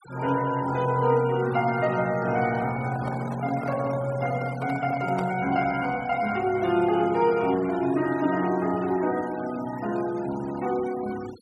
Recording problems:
denoising artefacts; signal-to-artefact ratio 17 dB
microphone handling noise; from 2.5 to 5.5 s; peak -6 dB vs average level

